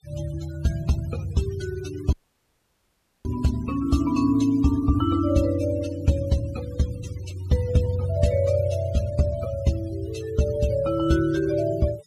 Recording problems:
denoising artefacts; signal-to-artefact ratio 19 dB
dropout; at 2 s for 1 s

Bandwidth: 14.5 kHz